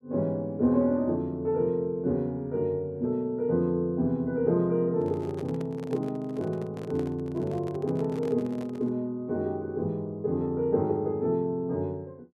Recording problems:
microphone handling noise; from 5 to 9 s; peak -9 dB vs average level

